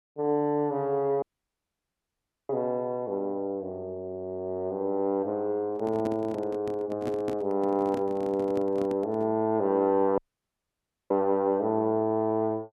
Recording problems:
audio cutting out; at 1 s for 1.5 s and at 10 s for 1 s
microphone handling noise; from 5.5 to 9.5 s; peak -3 dB vs average level

